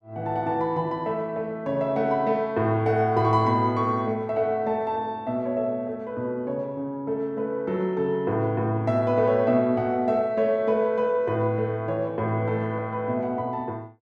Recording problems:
none

